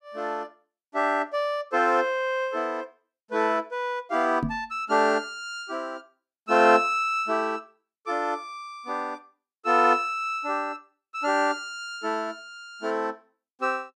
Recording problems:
microphone bump; at 4.5 s; peak +1 dB vs average level

